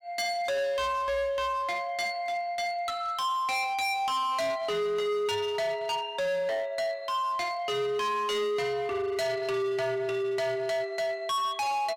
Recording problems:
distorted audio; hard clipping, signal-to-distortion ratio 8 dB

